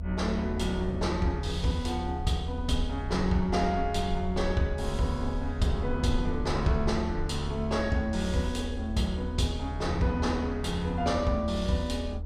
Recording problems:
low-frequency rumble; below 78 Hz, SNR 6 dB
wind on the microphone; below 380 Hz, SNR 14 dB

